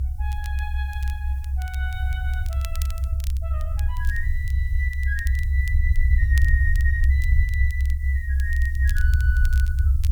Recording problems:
hiss; SNR 23 dB
low-frequency rumble; below 70 Hz, SNR -10 dB
crackle; vinyl, SNR 12 dB

